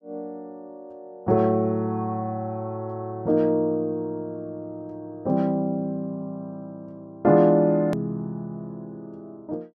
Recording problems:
click at an edit; at 8 s

